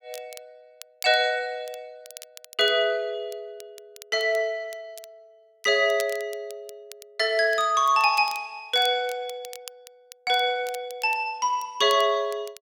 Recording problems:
crackle; vinyl, SNR 21 dB

